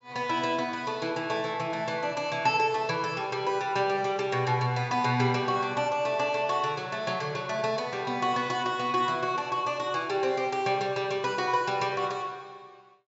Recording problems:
treble missing; nothing above 8 kHz

